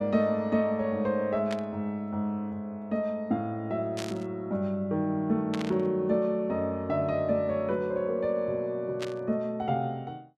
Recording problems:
burst of static; 4 times, first at 1.5 s; peak -4 dB vs average level

